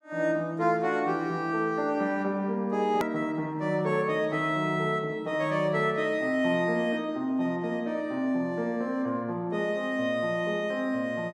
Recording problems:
click at an edit; at 3 s

